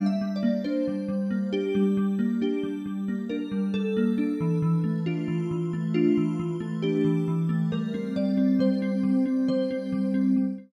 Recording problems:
none

